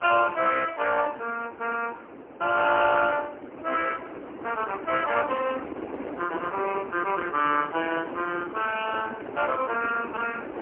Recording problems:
phone line; 260 Hz to 2.9 kHz, AMR-NB, then MP3
wind on the microphone; below 780 Hz, SNR 12 dB

